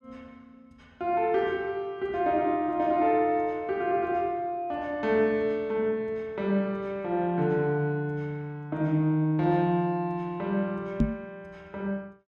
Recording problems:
knock on the microphone; at 11 s; peak +7 dB vs average level

